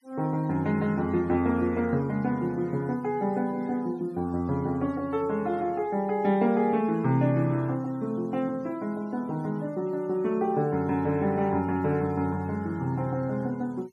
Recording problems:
denoising artefacts; signal-to-artefact ratio 28 dB

